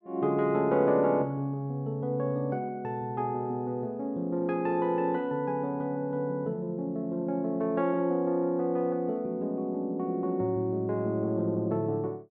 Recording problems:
none

